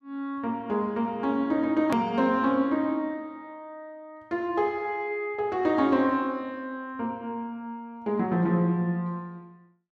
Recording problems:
click at an edit; at 2 s

